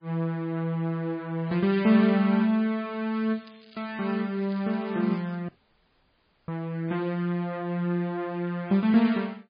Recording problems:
lossy codec; MP3, log-spectral distance 2 dB, nothing above 4.4 kHz
crackling; from 3 to 5.5 s; loose cable, SNR 27 dB
audio cutting out; at 5.5 s for 1 s

